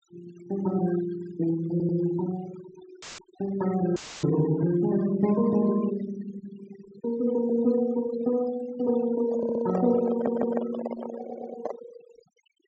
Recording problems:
low-pass filter; nothing above 8 kHz
noise reduction artefacts; signal-to-artefact ratio 15 dB
stutter; 4 times, first at 1.5 s
audio cutting out; at 3 s and at 4 s; filled with static
microphone handling noise; from 9.5 to 12 s; peak 0 dB vs average level

